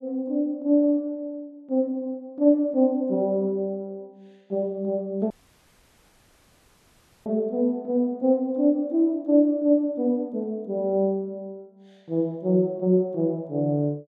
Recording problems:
audio cutting out; at 5.5 s for 2 s

